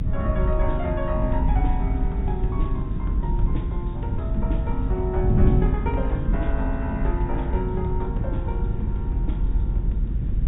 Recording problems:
treble missing; nothing above 4 kHz
background hiss; SNR 25 dB
rumble; below 58 Hz, strongest tone 42 Hz, SNR -2 dB
wind noise; below 160 Hz, SNR -2 dB

